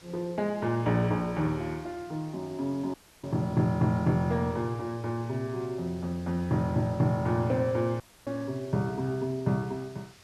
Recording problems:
background hiss; slope -1 dB per octave, SNR 24 dB
audio cutting out; at 3 s and at 8 s

